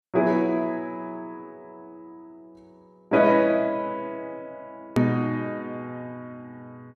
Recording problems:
hard cut with a click; at 5 s

